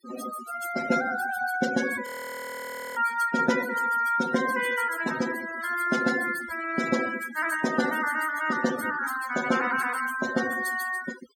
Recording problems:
denoising artefacts; signal-to-artefact ratio 10 dB
frozen audio; at 2 s for 1 s

